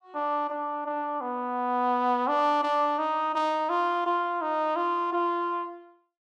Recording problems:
none

